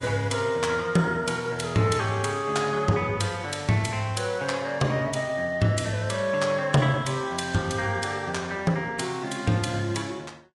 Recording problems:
codec artefacts; Vorbis, log-spectral distance 3 dB, nothing above 10.7 kHz

